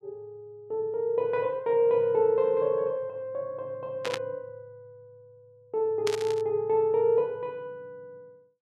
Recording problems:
burst of static; at 4 s and at 6 s; peak -1 dB vs average level

